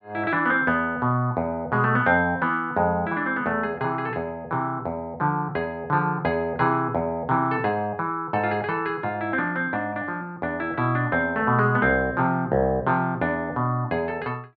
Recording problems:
none

